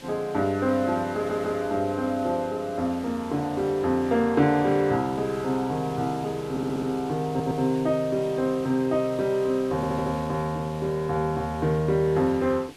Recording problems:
hiss; slope -2 dB per octave, SNR 20 dB
audio stuttering; 4 times, first at 1 s

